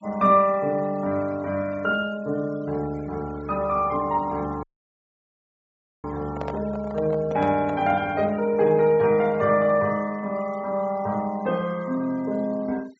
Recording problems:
low-pass filter; nothing above 8 kHz
noise reduction artefacts; signal-to-artefact ratio 24 dB
audio cutting out; at 4.5 s for 1.5 s
handling noise; from 6.5 to 8 s; peak -5 dB vs average level

